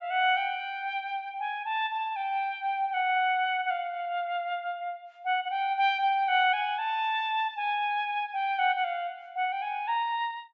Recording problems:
treble missing; nothing above 7.5 kHz

